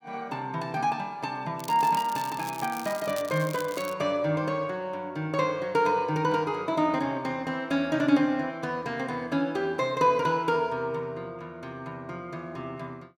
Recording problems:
crackling; from 1.5 to 4 s; loose cable, SNR 15 dB

